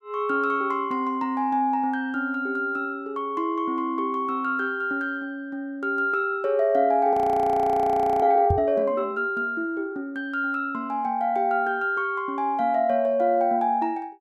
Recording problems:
frozen audio; at 7 s for 1 s
microphone bump; at 8.5 s; peak +3 dB vs average level

